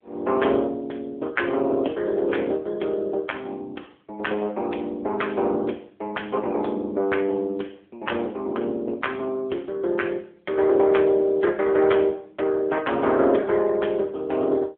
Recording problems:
phone line; 300 Hz to 3.6 kHz, AMR-NB

